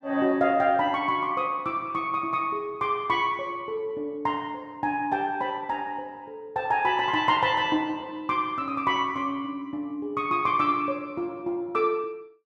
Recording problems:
none

